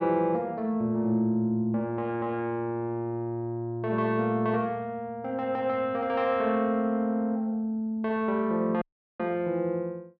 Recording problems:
dropout; at 9 s

